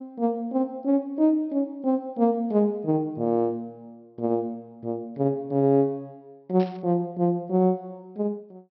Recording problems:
treble missing; nothing above 5.7 kHz
static burst; at 6.5 s; peak -13 dB vs average level

